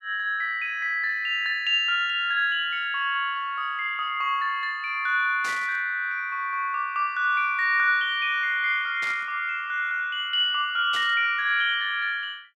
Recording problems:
static burst; at 5.5 s, at 9 s and at 11 s; peak -8 dB vs average level

